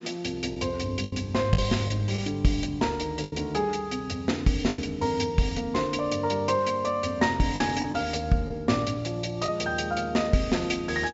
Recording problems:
treble missing; nothing above 8 kHz
packet loss; 4% of the sound replaced, filled with the last packet

